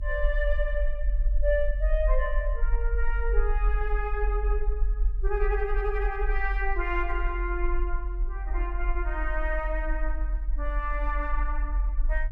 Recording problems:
low-frequency rumble; below 44 Hz, SNR -2 dB

